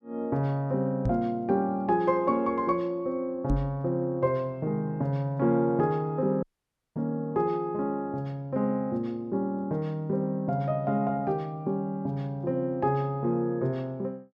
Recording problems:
knock on the microphone; at 1 s and at 3.5 s; peak +4 dB vs average level
dropout; at 6.5 s for 0.5 s

